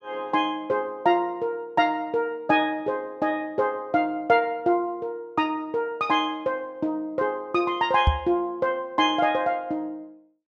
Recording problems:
knock on the microphone; at 8 s; peak +7 dB vs average level

